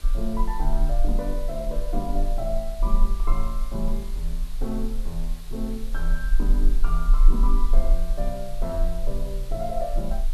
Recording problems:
background hiss; slope -1 dB per octave, SNR 14 dB
rumble; below 34 Hz, strongest tone 26 Hz, SNR -5 dB

